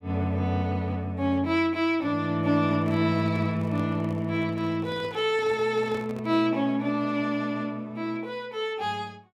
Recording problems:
handling noise; from 2.5 to 6.5 s; peak -10 dB vs average level

